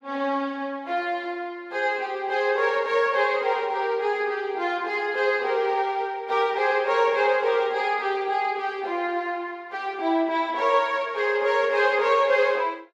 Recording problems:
none

